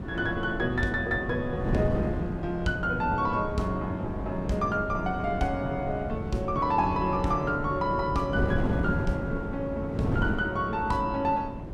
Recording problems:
wind on the microphone; below 310 Hz, SNR 4 dB

